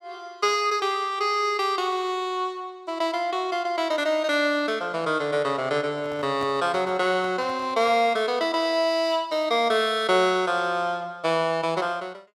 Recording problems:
microphone handling noise; from 6 to 8 s; peak -8 dB vs average level

